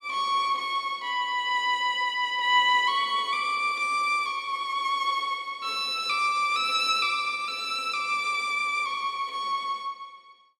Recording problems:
none

